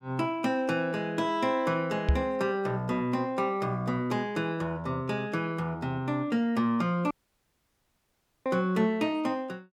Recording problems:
knock on the microphone; at 2 s; peak +8 dB vs average level
dropout; at 7 s for 1.5 s

